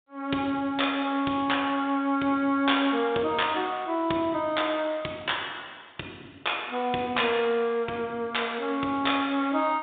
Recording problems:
phone line; 190 Hz to 3.7 kHz, G.726

